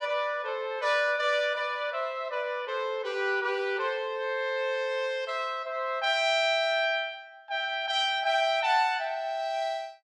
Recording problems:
none

